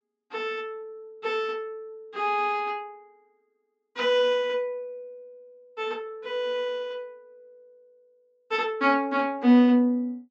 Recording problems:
low-pass filter; nothing above 8 kHz

